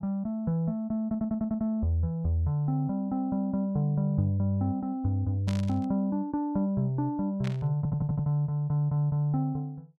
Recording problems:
stutter; at 1 s and at 8 s
burst of static; at 5.5 s and at 7.5 s; peak -8 dB vs average level

